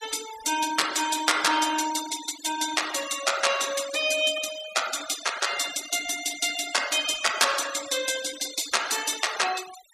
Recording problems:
noise reduction artefacts; signal-to-artefact ratio 11 dB

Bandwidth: 15 kHz